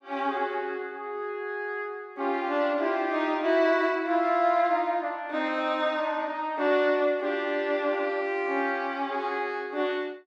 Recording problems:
none

